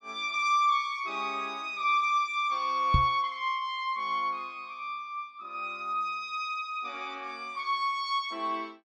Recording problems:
microphone thump; at 3 s; peak +8 dB vs average level

